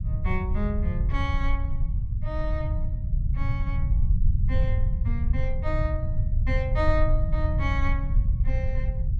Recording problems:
low-frequency rumble; below 86 Hz, SNR -6 dB

